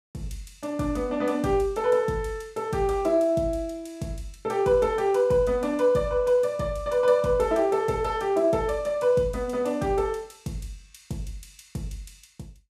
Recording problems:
none

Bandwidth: 14.5 kHz